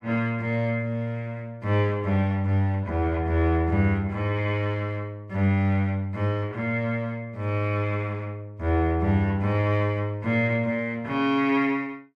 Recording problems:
none

